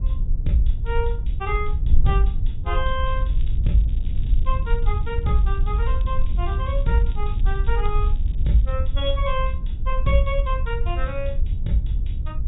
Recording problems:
low-pass filter; nothing above 4 kHz
wind on the microphone; below 60 Hz, SNR -2 dB
crackle; from 3 to 5 s, at 5 s and from 6 to 9 s; loose cable, SNR 27 dB

